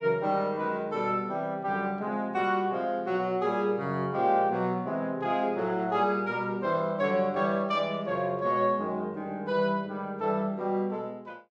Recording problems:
none

